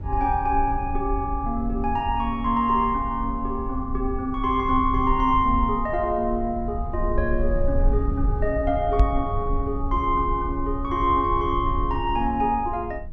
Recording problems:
low-frequency rumble; below 70 Hz, SNR 6 dB
microphone bump; at 9 s; peak +8 dB vs average level

